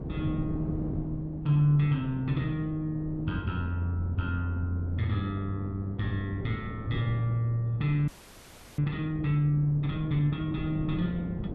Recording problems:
wind on the microphone; below 270 Hz, SNR 10 dB
frozen audio; at 8 s for 0.5 s

